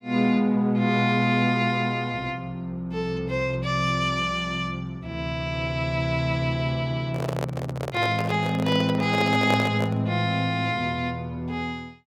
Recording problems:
handling noise; from 7 to 10 s; peak +1 dB vs average level

